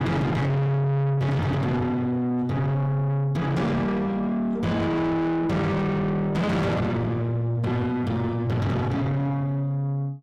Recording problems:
distorted audio; soft clipping, signal-to-distortion ratio 6 dB

